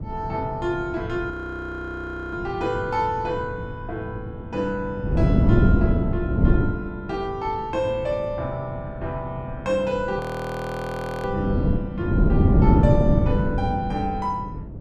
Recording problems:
wind noise; below 230 Hz, SNR -5 dB
frozen audio; at 1.5 s for 1 s and at 10 s for 1 s

